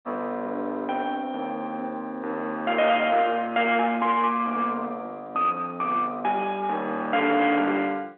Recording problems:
telephone audio; 260 Hz to 3.5 kHz, G.711
distortion; soft clipping, signal-to-distortion ratio 12 dB

